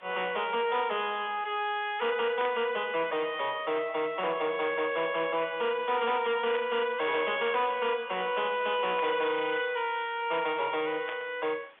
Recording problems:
telephone audio; 260 Hz to 3.6 kHz, G.711
distortion; hard clipping, signal-to-distortion ratio 9 dB
background hiss; SNR 26 dB
static burst; 4 times, first at 2.5 s; peak -5 dB vs average level

